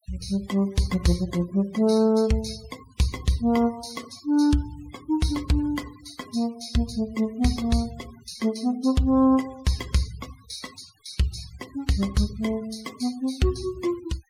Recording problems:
noise reduction artefacts; signal-to-artefact ratio 23 dB

